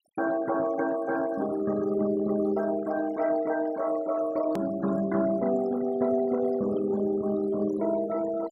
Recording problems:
noise reduction artefacts; signal-to-artefact ratio 17 dB
edit click; at 4.5 s

